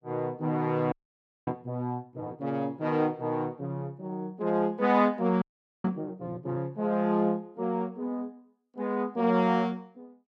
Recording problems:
frozen audio; at 1 s for 0.5 s and at 5.5 s

